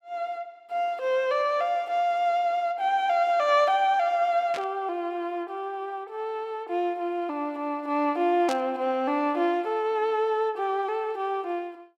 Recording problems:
burst of static; at 4.5 s and at 8.5 s; peak -6 dB vs average level

